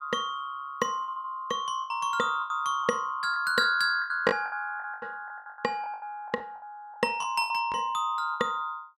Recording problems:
lost packets; 14% of the sound replaced, filled with the last packet

